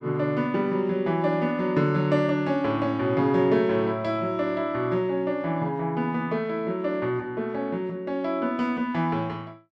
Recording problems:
none

